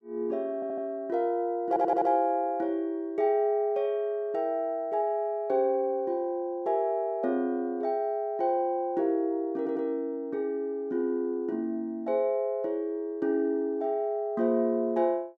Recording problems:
audio stuttering; at 0.5 s, at 1.5 s and at 9.5 s

